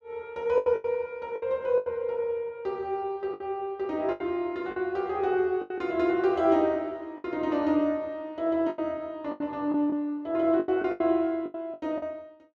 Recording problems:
lost packets; 10% of the sound replaced, filled with the last packet

